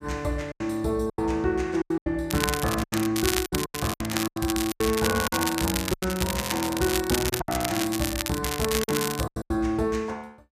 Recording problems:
packet loss; 11% of the sound replaced, filled with silence
crackle; from 2.5 to 6.5 s and from 7 to 9 s; loose cable, SNR 3 dB

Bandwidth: 14.5 kHz